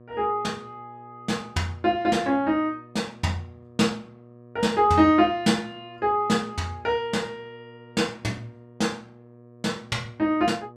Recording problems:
hum; 60 Hz, harmonics up to 1.2 kHz, SNR 24 dB

